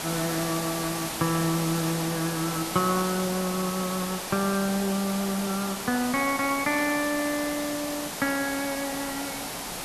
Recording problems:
hiss; SNR 4 dB

